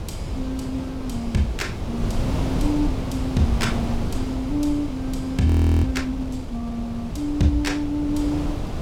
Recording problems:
wind on the microphone; below 260 Hz, SNR 4 dB
frozen audio; at 5.5 s

